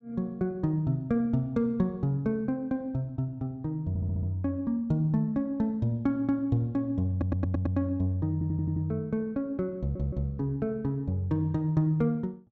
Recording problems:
stutter; 4 times, first at 4 s

